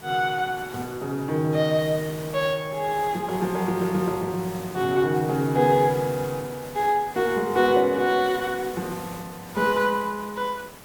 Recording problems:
background hiss; slope -5 dB per octave, SNR 16 dB

